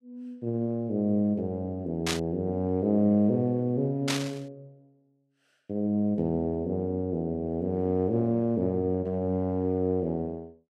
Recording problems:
static burst; at 2 s and at 4 s; peak +3 dB vs average level

